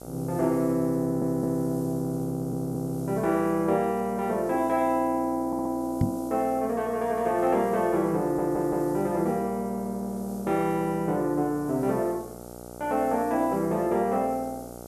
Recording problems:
hum; 60 Hz, harmonics up to 1.6 kHz, SNR 15 dB
hiss; SNR 22 dB
audio stuttering; 4 times, first at 1 s
microphone bump; at 6 s; peak +5 dB vs average level

